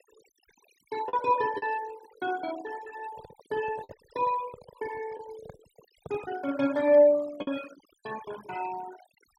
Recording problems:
noise reduction artefacts; signal-to-artefact ratio 19 dB
packet loss; 3% of the sound replaced, filled with the last packet
microphone handling noise; from 3 to 6.5 s; peak -10 dB vs average level

